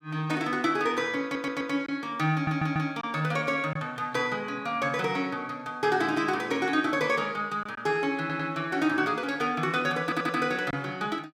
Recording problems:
lost packets; 1.2% of the sound replaced, filled with silence
stutter; 4 times, first at 1 s

